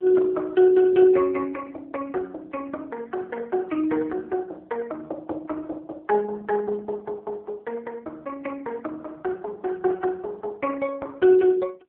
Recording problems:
telephone audio; 280 Hz to 2.3 kHz, AMR-NB

